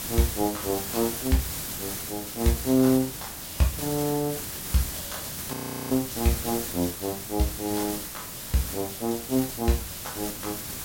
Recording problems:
background hiss; slope -1 dB per octave, SNR 5 dB
frozen audio; at 5.5 s

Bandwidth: 16.5 kHz